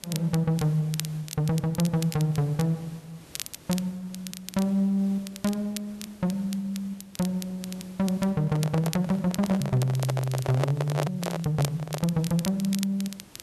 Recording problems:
hiss; slope -4 dB per octave, SNR 24 dB
crackle; vinyl, SNR 13 dB
microphone handling noise; from 8.5 to 12 s; peak +4 dB vs average level

